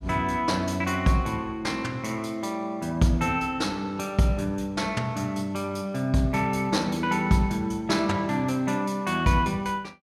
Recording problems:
none

